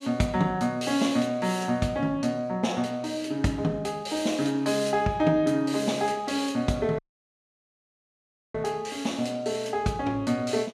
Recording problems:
audio cutting out; at 7 s for 1.5 s

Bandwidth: 14 kHz